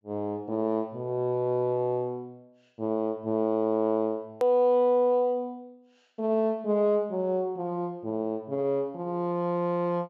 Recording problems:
treble missing; nothing above 8 kHz
click at an edit; at 4.5 s

